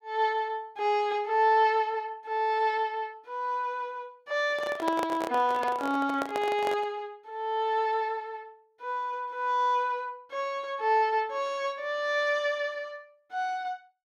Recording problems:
handling noise; from 4.5 to 7 s; peak 0 dB vs average level

